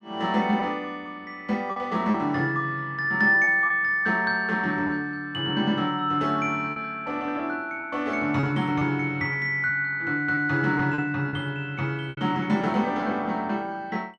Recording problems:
packet loss; 4% of the sound replaced, filled with repeated pitch periods

